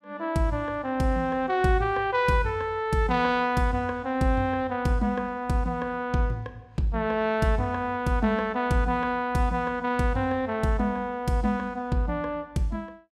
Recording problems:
none

